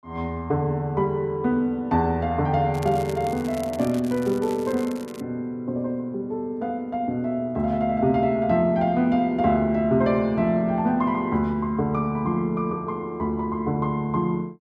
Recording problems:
crackle; from 2.5 to 5 s; loose cable, SNR 20 dB

